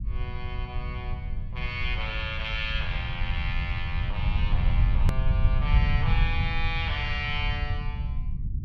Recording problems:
low-frequency rumble; below 92 Hz, SNR -4 dB
click at an edit; at 5 s

